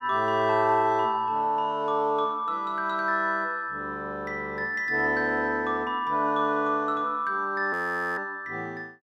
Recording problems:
audio freezing; at 7.5 s

